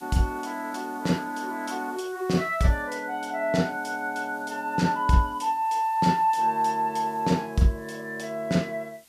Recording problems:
background hiss; slope +1 dB per octave, SNR 27 dB

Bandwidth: 14.5 kHz